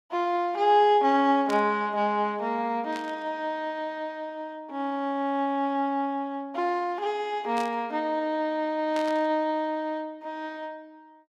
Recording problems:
burst of static; 4 times, first at 1.5 s; peak -8 dB vs average level

